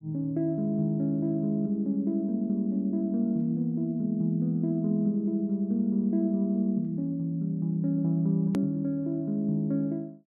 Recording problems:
hard cut with a click; at 8.5 s

